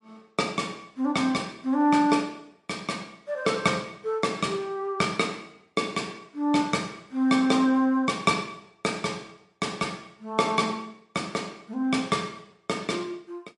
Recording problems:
lossy codec; MP3, log-spectral distance 2 dB, nothing above 10.7 kHz

